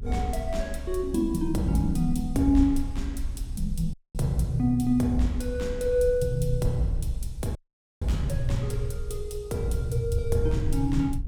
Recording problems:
low-frequency rumble; below 64 Hz, strongest tone 22 Hz, SNR 8 dB
dropout; at 4 s and at 7.5 s

